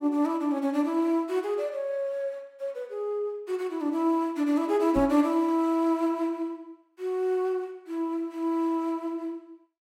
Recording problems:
microphone thump; at 5 s; peak -3 dB vs average level

